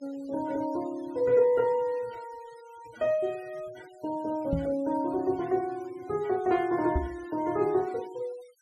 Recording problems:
denoising artefacts; signal-to-artefact ratio 24 dB
microphone bump; at 4.5 s and at 7 s; peak +3 dB vs average level

